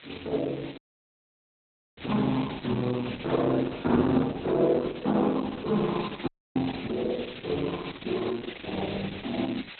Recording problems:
lossy compression; Opus, log-spectral distance 16 dB
background hiss; SNR 15 dB
audio cutting out; at 1 s for 1 s and at 6.5 s

